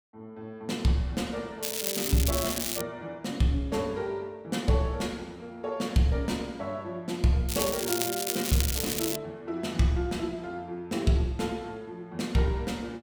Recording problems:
crackling; from 1.5 to 3 s, from 7.5 to 8.5 s and at 8.5 s; loose cable, SNR 1 dB

